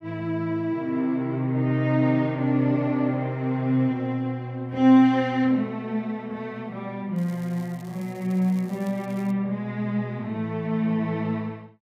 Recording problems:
crackling; from 7 to 9.5 s; loose cable, SNR 27 dB

